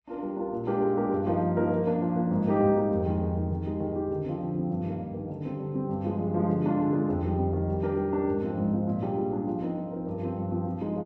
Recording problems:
none

